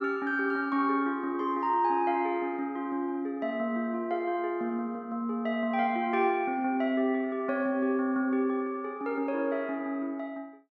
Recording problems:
none

